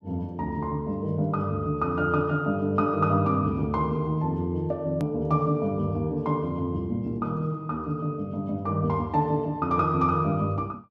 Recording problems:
hard cut with a click; at 5 s

